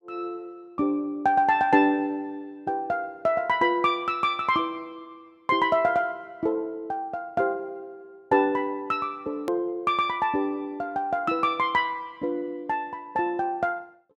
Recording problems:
hard cut with a click; at 9.5 s

